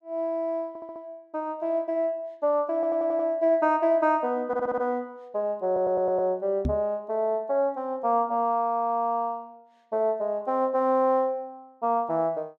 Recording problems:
stutter; 4 times, first at 0.5 s
microphone thump; at 6.5 s; peak +2 dB vs average level

